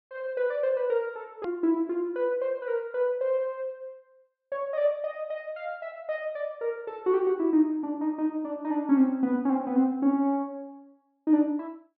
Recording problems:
treble missing; nothing above 5.5 kHz
click at an edit; at 1.5 s

